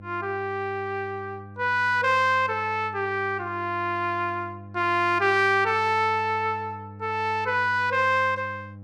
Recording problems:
hum; 50 Hz, harmonics up to 800 Hz, SNR 18 dB

